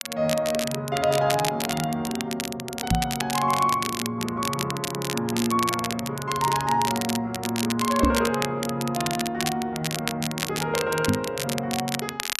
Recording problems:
crackling; vinyl, SNR 5 dB
microphone bump; at 3 s, at 8 s and at 11 s; peak +8 dB vs average level

